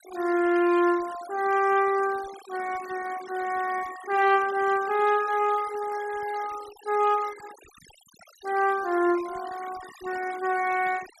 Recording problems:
noise reduction artefacts; signal-to-artefact ratio 18 dB

